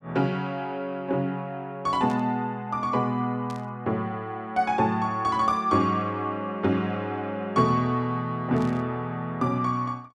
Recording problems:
burst of static; at 2 s, at 3.5 s and at 8.5 s; peak -15 dB vs average level

